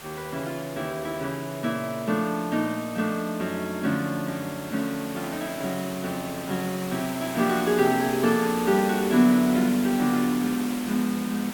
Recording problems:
hiss; slope -2 dB per octave, SNR 12 dB

